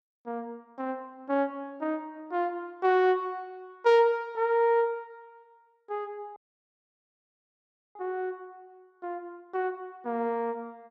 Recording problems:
audio cutting out; at 6.5 s for 1.5 s

